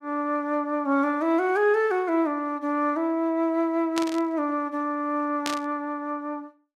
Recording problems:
burst of static; at 4 s and at 5.5 s; peak 0 dB vs average level

